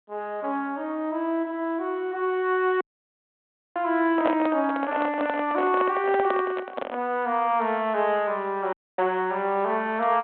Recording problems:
phone line; 220 Hz to 3.5 kHz, G.726
dropout; at 3 s for 1 s and at 8.5 s
microphone handling noise; from 4 to 7 s; peak +2 dB vs average level

